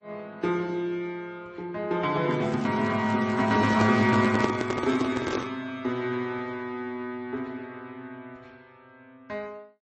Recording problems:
lossy codec; MP3, then MP3, log-spectral distance 2 dB, nothing above 7.1 kHz
crackle; from 2.5 to 5 s; loose cable, SNR 25 dB
microphone handling noise; from 3.5 to 5.5 s; peak +3 dB vs average level

